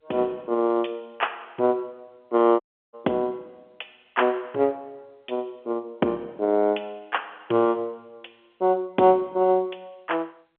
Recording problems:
telephone audio; 260 Hz to 3.4 kHz, G.711
audio cutting out; at 2.5 s

